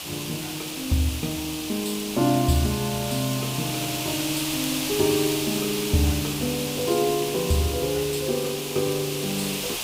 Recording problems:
background hiss; SNR 3 dB
crackling; vinyl, SNR 21 dB

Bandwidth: 15.5 kHz